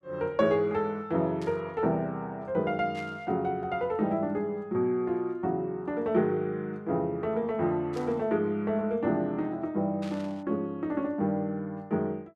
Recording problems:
static burst; 4 times, first at 1.5 s; peak -12 dB vs average level

